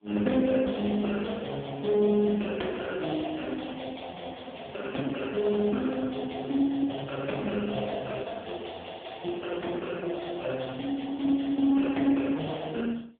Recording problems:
phone line; 220 Hz to 3.4 kHz, AMR-NB

